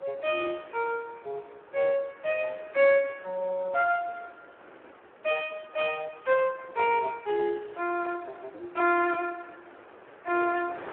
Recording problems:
telephone audio; 300 Hz to 3.1 kHz, Speex
wind on the microphone; below 1.6 kHz, SNR 22 dB

